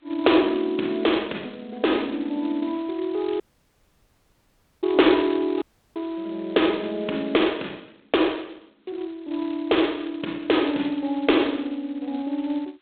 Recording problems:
phone line; 260 Hz to 3.9 kHz, G.726
audio cutting out; at 3.5 s for 1.5 s and at 5.5 s

